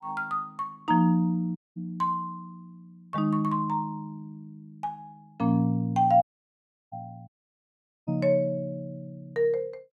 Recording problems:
audio cutting out; at 1.5 s, at 6 s for 0.5 s and at 7.5 s for 1 s

